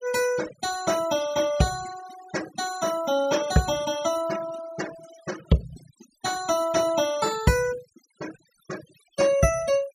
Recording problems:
noise reduction artefacts; signal-to-artefact ratio 14 dB

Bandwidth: 14 kHz